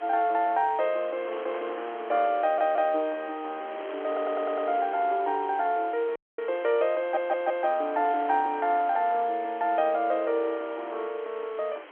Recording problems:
phone line; 280 Hz to 3.8 kHz, G.711
background hiss; SNR 22 dB
wind noise; below 1.8 kHz, SNR 20 dB
audio stuttering; at 2.5 s, at 4 s and at 7 s
dropout; at 6 s

